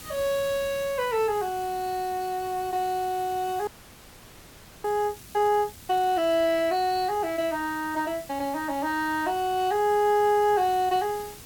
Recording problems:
hiss; SNR 18 dB
audio freezing; at 3.5 s for 1 s

